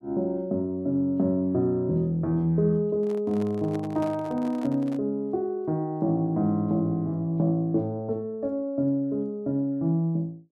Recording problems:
handling noise; from 3 to 5 s; peak -9 dB vs average level

